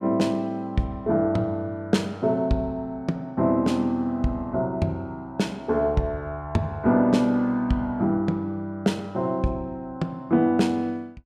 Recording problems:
none

